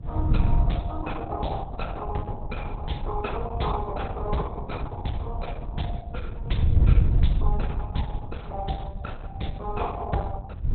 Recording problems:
lossy compression; Opus, log-spectral distance 3 dB, nothing above 4 kHz
wind noise; below 96 Hz, SNR -4 dB

